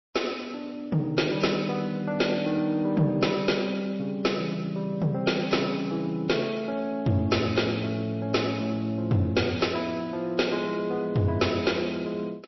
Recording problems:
lossy compression; MP3, log-spectral distance 4 dB, nothing above 5.7 kHz
distorted audio; soft clipping, signal-to-distortion ratio 12 dB

